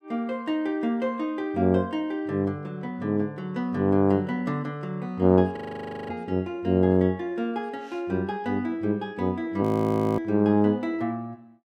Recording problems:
frozen audio; at 5.5 s for 0.5 s and at 9.5 s for 0.5 s

